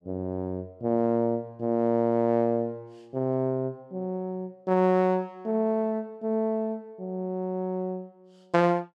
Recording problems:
none

